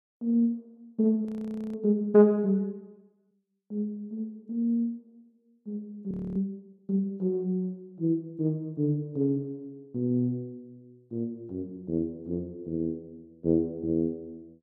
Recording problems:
frozen audio; at 1.5 s and at 6 s

